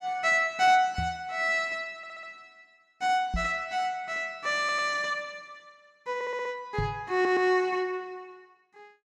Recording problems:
knock on the microphone; at 1 s, at 3.5 s and at 7 s; peak 0 dB vs average level
stutter; 4 times, first at 2 s

